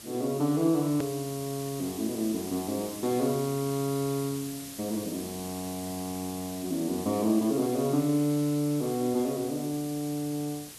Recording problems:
background hiss; SNR 11 dB
click at an edit; at 1 s

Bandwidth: 13 kHz